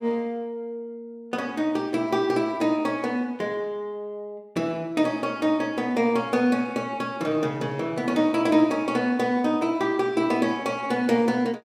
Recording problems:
none

